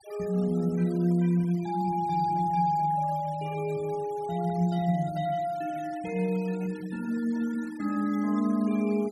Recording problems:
noise reduction artefacts; signal-to-artefact ratio 22 dB

